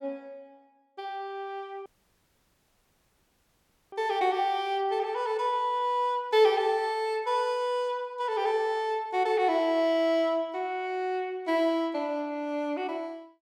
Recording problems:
audio cutting out; at 2 s for 2 s

